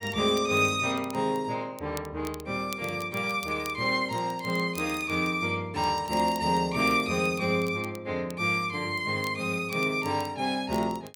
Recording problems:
crackle; vinyl, SNR 21 dB

